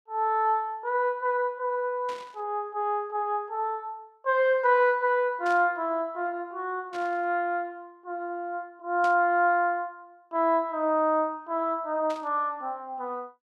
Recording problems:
static burst; 5 times, first at 2 s; peak -11 dB vs average level

